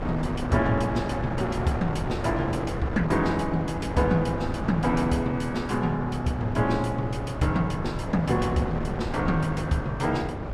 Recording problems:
wind on the microphone; below 620 Hz, SNR 6 dB

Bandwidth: 15 kHz